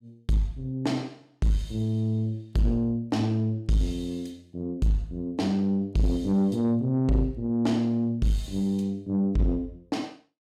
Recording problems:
distortion; soft clipping, signal-to-distortion ratio 12 dB

